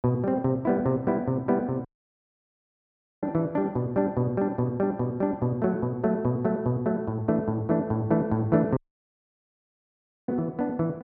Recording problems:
dropout; at 2 s for 1.5 s and at 9 s for 1.5 s

